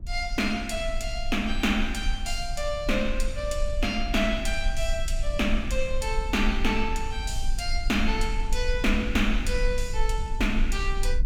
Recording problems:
rumble; below 44 Hz, strongest tone 18 Hz, SNR 4 dB

